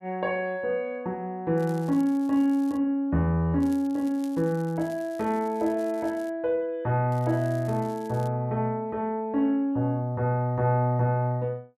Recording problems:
crackle; from 1.5 to 3 s, from 3.5 to 6.5 s and from 7 to 8.5 s; loose cable, SNR 26 dB

